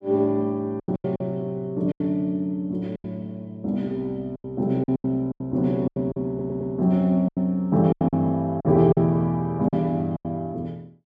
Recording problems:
lost packets; 11% of the sound replaced, filled with silence
stutter; at 6.5 s

